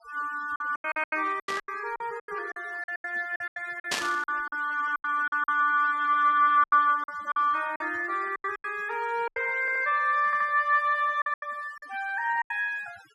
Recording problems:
denoising artefacts; signal-to-artefact ratio 24 dB
lost packets; 14% of the sound replaced, filled with silence
burst of static; at 1.5 s and at 4 s; peak +3 dB vs average level
stutter; at 9.5 s and at 10 s

